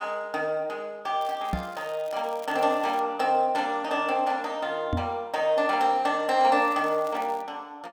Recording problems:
crackle; from 1 to 3 s and at 6.5 s; loose cable, SNR 25 dB
microphone thump; at 1.5 s and at 5 s; peak +1 dB vs average level

